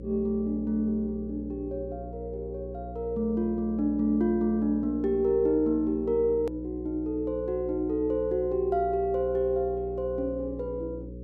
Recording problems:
electrical hum; 60 Hz, harmonics up to 540 Hz, SNR 12 dB
hard cut with a click; at 6.5 s

